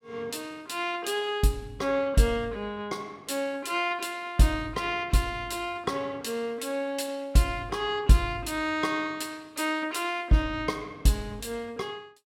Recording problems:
none

